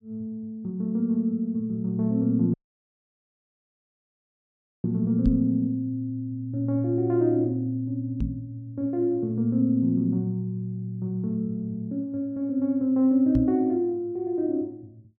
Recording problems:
dropout; at 2.5 s for 2.5 s
knock on the microphone; at 5.5 s, at 8 s and at 13 s; peak +2 dB vs average level

